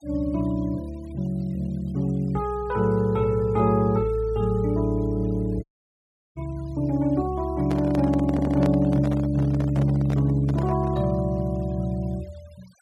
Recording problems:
noise reduction artefacts; signal-to-artefact ratio 27 dB
dropout; at 5.5 s for 0.5 s
microphone handling noise; from 7.5 to 11 s; peak -4 dB vs average level
stutter; at 8.5 s

